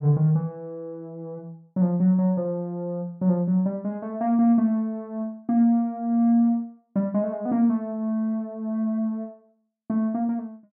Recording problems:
none

